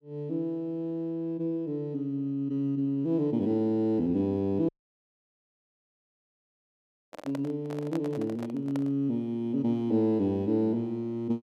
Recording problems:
dropout; at 4.5 s for 2.5 s
handling noise; from 7 to 9 s; peak -6 dB vs average level

